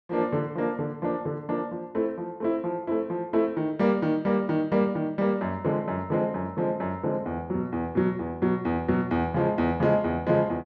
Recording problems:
none

